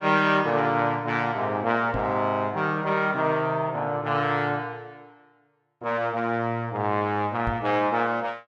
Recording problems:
knock on the microphone; at 2 s and at 7.5 s; peak -3 dB vs average level

